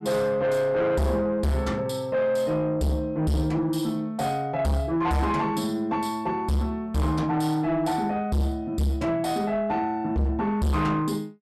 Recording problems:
distortion; soft clipping, signal-to-distortion ratio 7 dB

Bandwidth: 13.5 kHz